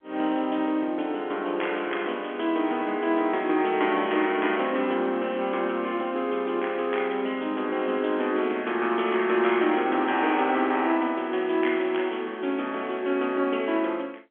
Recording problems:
telephone audio; 240 Hz to 3.4 kHz, G.711

